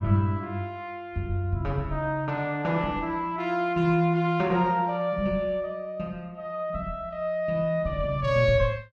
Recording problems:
none

